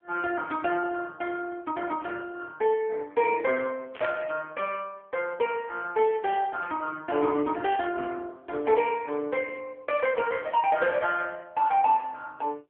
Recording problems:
telephone audio; 300 Hz to 3.3 kHz, AMR-NB
static burst; at 4 s; peak -10 dB vs average level

